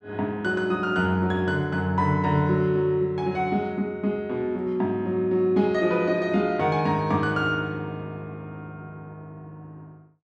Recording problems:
none

